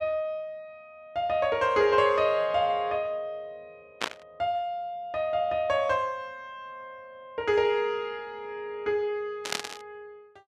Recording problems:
static burst; at 4 s and at 9.5 s; peak +3 dB vs average level

